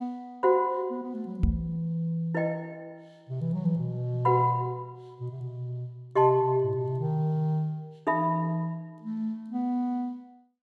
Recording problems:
microphone bump; at 1.5 s; peak +7 dB vs average level

